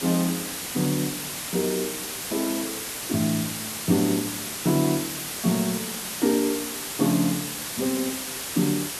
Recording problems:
hiss; slope -1 dB per octave, SNR 3 dB

